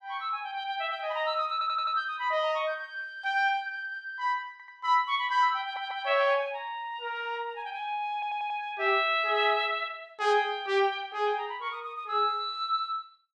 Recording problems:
audio stuttering; 4 times, first at 1.5 s

